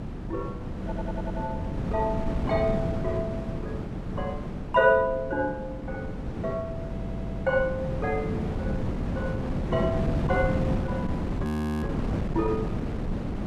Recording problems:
wind noise; below 290 Hz, SNR 1 dB
audio stuttering; at 1 s and at 7 s
audio freezing; at 11 s

